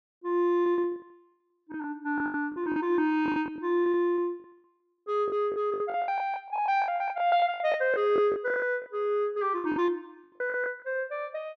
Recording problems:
lost packets; 16% of the sound replaced, filled with the last packet

